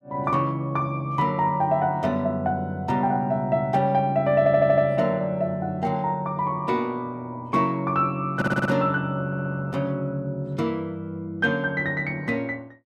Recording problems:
audio stuttering; at 4.5 s, at 8.5 s and at 9.5 s

